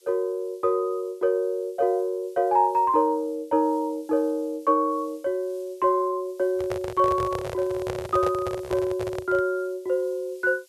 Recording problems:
hiss; SNR 30 dB
handling noise; from 6.5 to 9.5 s; peak -2 dB vs average level

